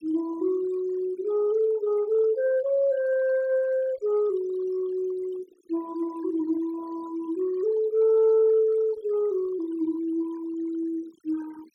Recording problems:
noise reduction artefacts; signal-to-artefact ratio 25 dB

